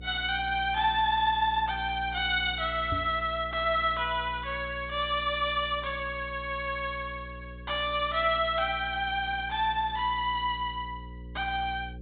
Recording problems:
low-pass filter; nothing above 4 kHz
hum; 60 Hz, harmonics up to 540 Hz, SNR 15 dB
microphone thump; at 3 s; peak -2 dB vs average level

